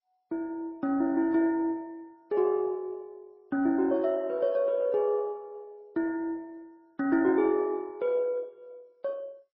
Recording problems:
lossy compression; MP2, then MP3, log-spectral distance 2 dB, nothing above 5 kHz

